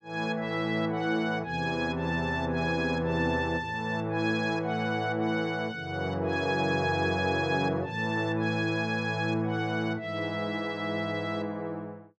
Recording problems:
none

